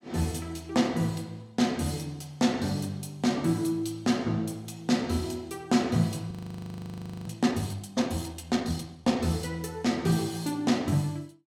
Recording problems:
audio freezing; at 6.5 s for 1 s

